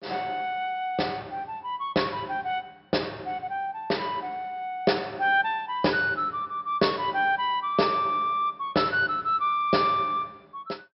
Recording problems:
low-pass filter; nothing above 5.3 kHz

